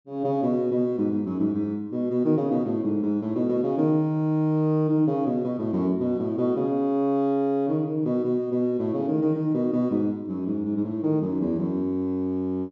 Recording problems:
low-pass filter; nothing above 7.5 kHz

